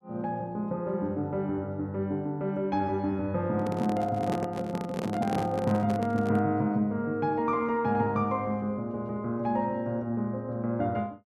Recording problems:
microphone handling noise; from 3.5 to 6.5 s; peak 0 dB vs average level

